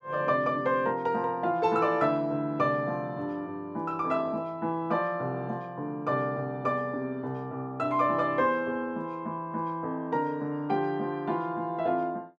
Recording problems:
none

